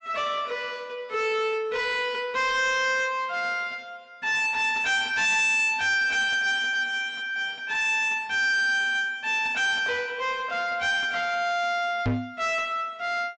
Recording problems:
treble missing; nothing above 8 kHz
distorted audio; soft clipping, signal-to-distortion ratio 7 dB
microphone bump; at 12 s; peak +2 dB vs average level

